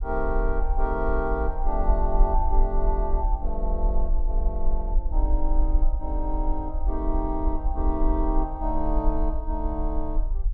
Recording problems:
low-frequency rumble; below 44 Hz, SNR -2 dB

